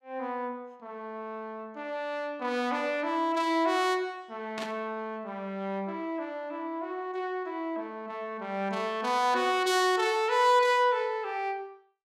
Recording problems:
static burst; at 4.5 s; peak -5 dB vs average level

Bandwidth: 16 kHz